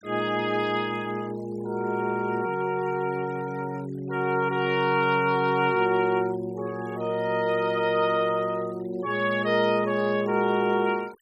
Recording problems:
noise reduction artefacts; signal-to-artefact ratio 24 dB

